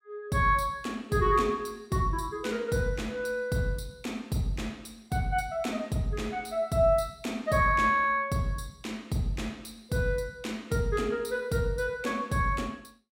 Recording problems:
none

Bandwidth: 16.5 kHz